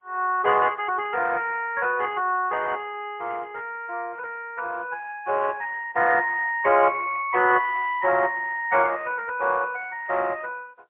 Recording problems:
telephone audio; 300 Hz to 3.3 kHz, AMR-NB, then MP3

